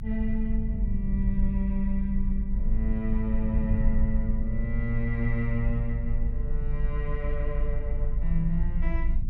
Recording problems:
rumble; below 52 Hz, strongest tone 22 Hz, SNR -2 dB

